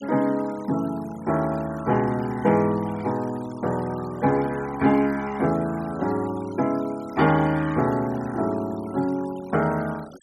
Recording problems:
denoising artefacts; signal-to-artefact ratio 21 dB

